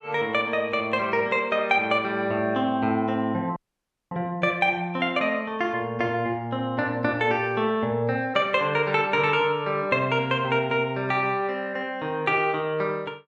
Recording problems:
dropout; at 3.5 s for 0.5 s

